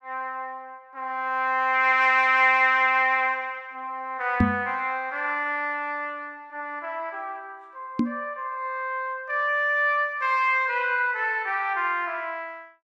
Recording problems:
microphone thump; at 4.5 s and at 8 s; peak +6 dB vs average level

